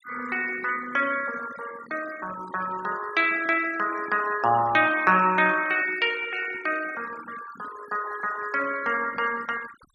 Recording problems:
noise reduction artefacts; signal-to-artefact ratio 17 dB

